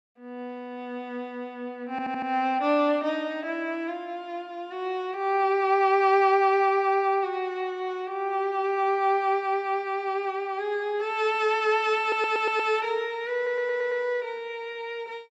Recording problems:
stutter; at 2 s, at 12 s and at 13 s

